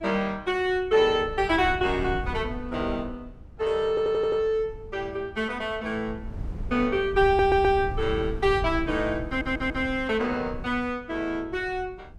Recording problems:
wind on the microphone; below 110 Hz, SNR 12 dB
stutter; at 4 s, at 7.5 s and at 9.5 s

